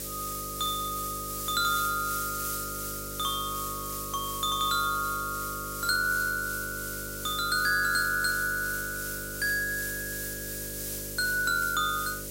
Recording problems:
hum; 50 Hz, harmonics up to 600 Hz, SNR 13 dB
background hiss; slope +4 dB per octave, SNR 5 dB

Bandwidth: 16 kHz